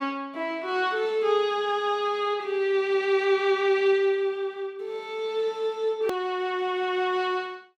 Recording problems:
hard cut with a click; at 6 s

